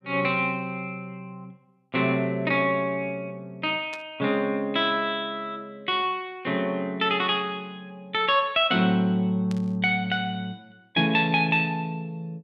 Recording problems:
static burst; at 4 s and at 9.5 s; peak -11 dB vs average level

